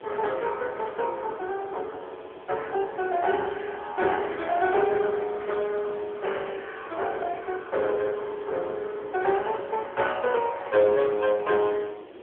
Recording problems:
telephone audio; 340 Hz to 3.4 kHz, AMR-NB
hiss; SNR 28 dB
wind on the microphone; below 530 Hz, SNR 18 dB

